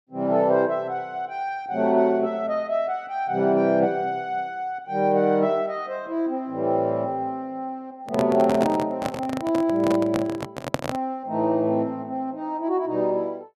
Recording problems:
microphone handling noise; from 8 to 11 s; peak +4 dB vs average level

